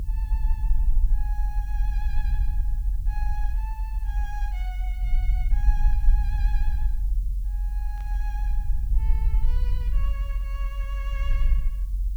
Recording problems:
background hiss; SNR 13 dB
rumble; below 46 Hz, SNR -17 dB
static burst; at 8 s; peak -6 dB vs average level

